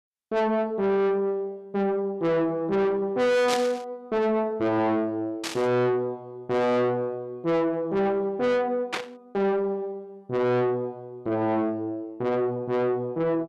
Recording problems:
distorted audio; soft clipping, signal-to-distortion ratio 6 dB
burst of static; at 3.5 s, at 5.5 s and at 9 s; peak +1 dB vs average level

